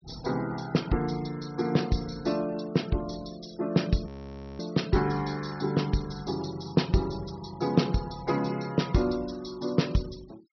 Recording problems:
treble missing; nothing above 6 kHz
denoising artefacts; signal-to-artefact ratio 22 dB
frozen audio; at 4 s for 0.5 s

